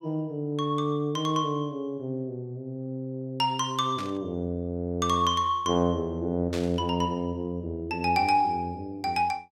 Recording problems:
burst of static; at 4 s and at 6.5 s; peak -6 dB vs average level

